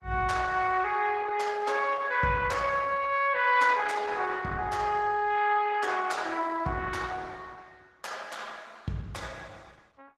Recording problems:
lossy codec; Opus, log-spectral distance 4 dB, nothing above 15.1 kHz

